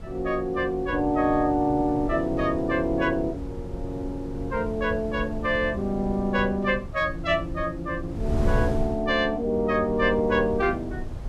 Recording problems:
wind on the microphone; below 120 Hz, SNR 10 dB

